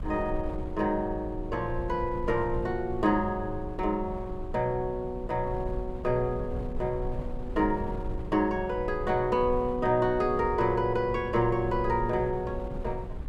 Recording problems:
wind noise; below 84 Hz, SNR 11 dB

